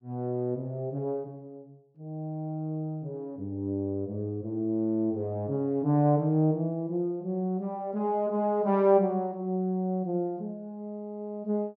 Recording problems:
none

